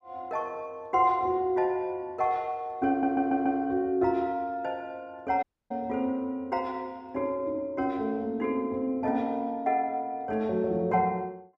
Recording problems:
stutter; at 3 s
audio cutting out; at 5.5 s

